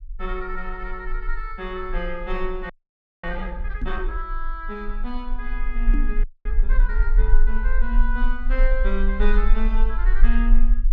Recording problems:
low-frequency rumble; below 36 Hz, strongest tone 18 Hz, SNR -6 dB
audio freezing; at 2.5 s for 0.5 s and at 6 s
microphone bump; at 4 s and at 6 s; peak +3 dB vs average level

